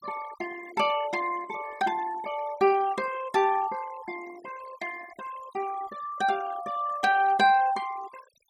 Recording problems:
denoising artefacts; signal-to-artefact ratio 18 dB

